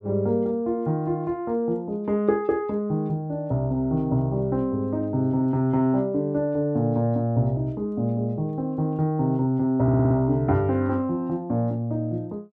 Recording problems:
audio stuttering; at 10 s

